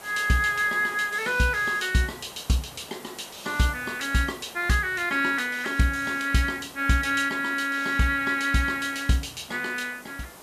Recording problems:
hiss; SNR 19 dB

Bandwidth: 14 kHz